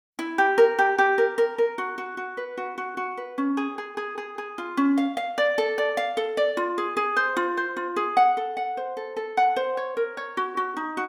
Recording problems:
none

